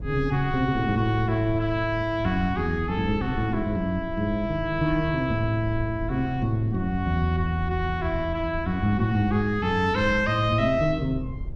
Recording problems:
rumble; below 100 Hz, SNR 12 dB

